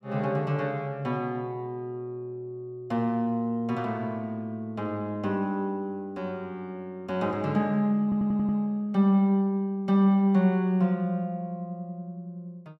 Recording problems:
stutter; at 8 s

